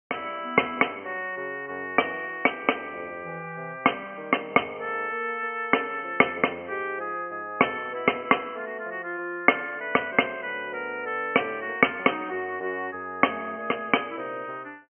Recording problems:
low-pass filter; nothing above 3.1 kHz

